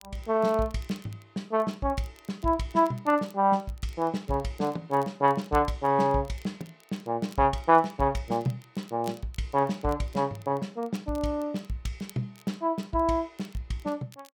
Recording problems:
crackle; vinyl, SNR 27 dB

